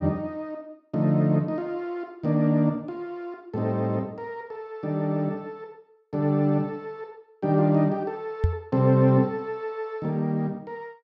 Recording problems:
microphone thump; at 8.5 s; peak +6 dB vs average level

